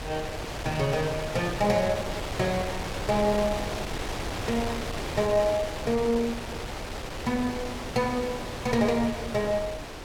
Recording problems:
wind on the microphone; below 2.2 kHz, SNR 6 dB

